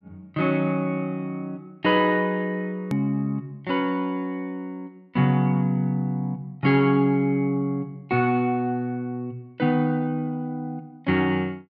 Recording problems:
edit click; at 3 s

